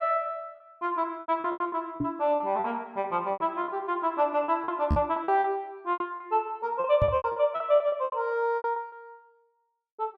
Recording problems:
lost packets; 16% of the sound replaced, filled with repeated pitch periods
knock on the microphone; at 2 s, at 5 s and at 7 s; peak +5 dB vs average level

